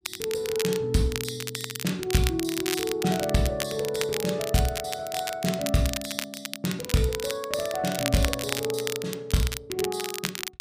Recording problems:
crackle; vinyl, SNR 5 dB

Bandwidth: 15 kHz